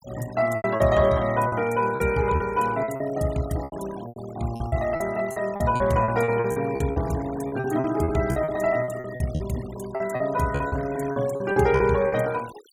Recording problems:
noise reduction artefacts; signal-to-artefact ratio 18 dB
packet loss; 14% of the sound replaced, filled with repeated pitch periods

